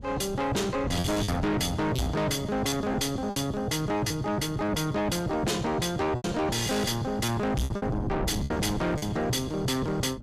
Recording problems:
distorted audio; soft clipping, signal-to-distortion ratio 6 dB
wind on the microphone; below 260 Hz, SNR 11 dB
lost packets; 6% of the sound replaced, filled with repeated pitch periods

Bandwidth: 14.5 kHz